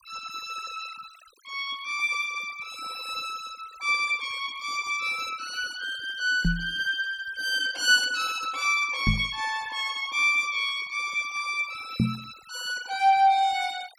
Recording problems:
noise reduction artefacts; signal-to-artefact ratio 21 dB
microphone thump; at 6.5 s, at 9 s and at 12 s; peak +6 dB vs average level

